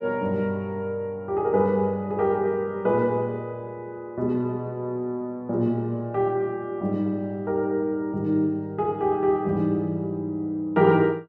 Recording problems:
none

